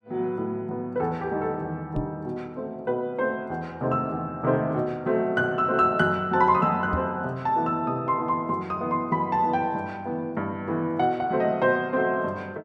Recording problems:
knock on the microphone; at 2 s and at 7 s; peak 0 dB vs average level

